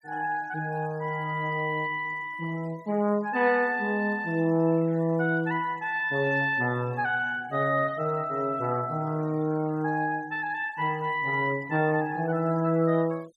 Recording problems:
noise reduction artefacts; signal-to-artefact ratio 26 dB

